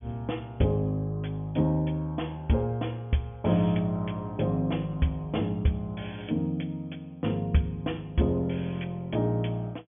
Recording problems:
treble missing; nothing above 3.4 kHz

